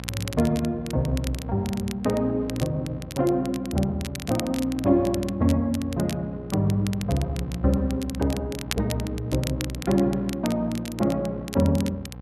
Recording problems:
hum; 60 Hz, harmonics up to 1.3 kHz, SNR 13 dB
crackling; vinyl, SNR 14 dB

